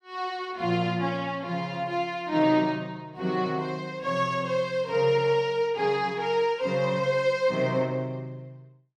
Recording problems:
none

